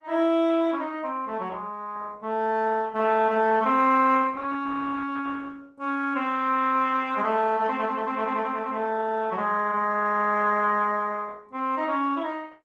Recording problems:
codec artefacts; Opus, log-spectral distance 3 dB

